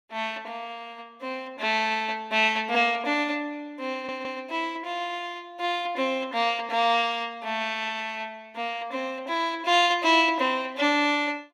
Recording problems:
audio stuttering; at 4 s

